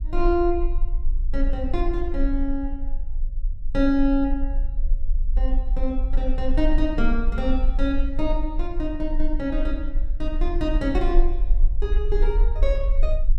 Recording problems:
low-frequency rumble; below 38 Hz, strongest tone 22 Hz, SNR 0 dB

